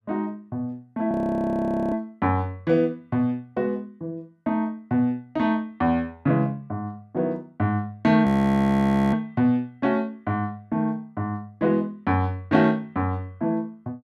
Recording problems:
audio freezing; at 1 s for 1 s and at 8.5 s for 1 s

